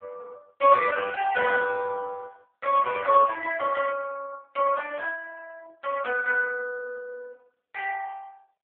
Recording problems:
phone line; 340 Hz to 2.3 kHz, AMR-NB

